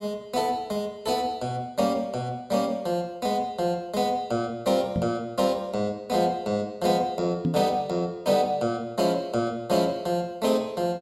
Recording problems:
microphone bump; at 5 s and at 7.5 s; peak +4 dB vs average level

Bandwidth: 16 kHz